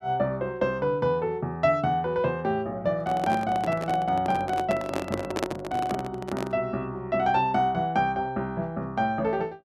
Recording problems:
microphone handling noise; from 3 to 6.5 s; peak +4 dB vs average level

